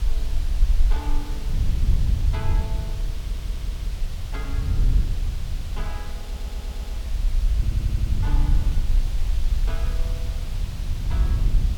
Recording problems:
background hiss; slope -2 dB per octave, SNR 0 dB
low-frequency rumble; below 48 Hz, SNR -11 dB
wind on the microphone; below 78 Hz, SNR -14 dB
audio stuttering; at 3 s, at 6.5 s and at 7.5 s

